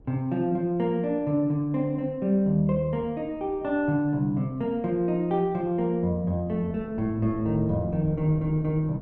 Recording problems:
wind on the microphone; below 300 Hz, SNR 19 dB

